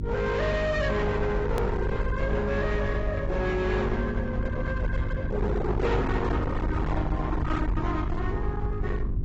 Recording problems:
lossy codec; AAC, log-spectral distance 2 dB, nothing above 17.7 kHz
distorted audio; hard clipping, signal-to-distortion ratio 6 dB
hum; 50 Hz, harmonics up to 400 Hz, SNR 4 dB
rumble; below 240 Hz, SNR 4 dB
click at an edit; at 1.5 s

